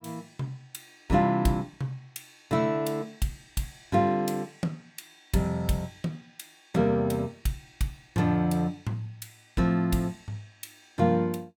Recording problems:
none

